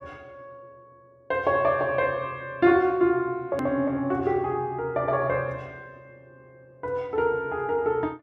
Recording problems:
hard cut with a click; at 3.5 s

